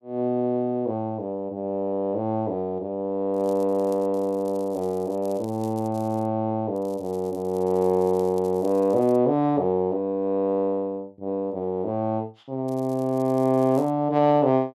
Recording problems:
crackle; from 3.5 to 6.5 s, from 7 to 9 s and from 13 to 14 s; loose cable, SNR 27 dB

